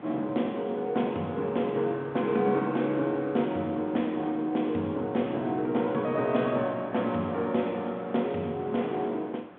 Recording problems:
phone line; 130 Hz to 3.6 kHz, G.726
wind on the microphone; below 1.1 kHz, SNR 19 dB

